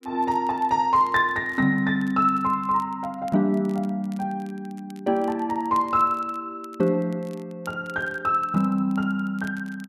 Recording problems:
crackle; vinyl, SNR 30 dB

